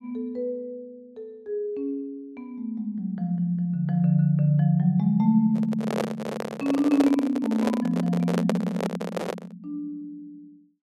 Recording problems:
handling noise; from 5.5 to 9.5 s; peak +2 dB vs average level

